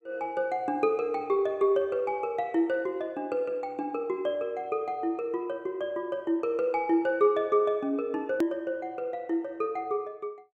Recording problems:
hard cut with a click; at 8.5 s

